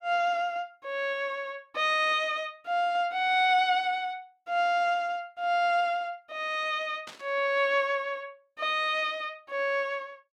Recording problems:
static burst; at 7 s; peak -11 dB vs average level

